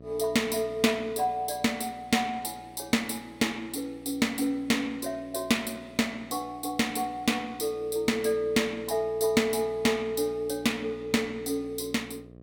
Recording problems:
hum; 60 Hz, harmonics up to 720 Hz, SNR 22 dB

